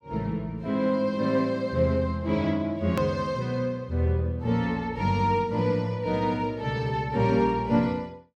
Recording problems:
edit click; at 3 s

